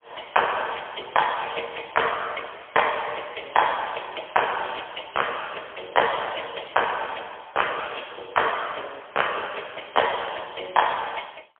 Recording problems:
telephone audio; 320 Hz to 3.3 kHz, AMR-NB, then MP3

